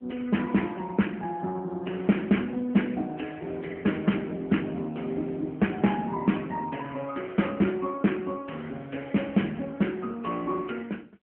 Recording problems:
phone line; 150 Hz to 3.3 kHz, AMR-NB

